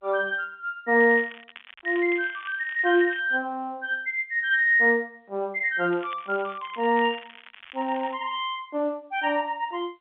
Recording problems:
phone line; 190 Hz to 3.5 kHz, G.711
crackling; from 1 to 3 s and from 6 to 8 s; loose cable, SNR 21 dB

